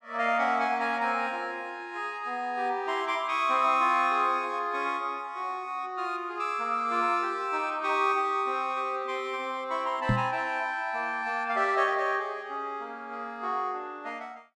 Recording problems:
knock on the microphone; at 10 s; peak +5 dB vs average level

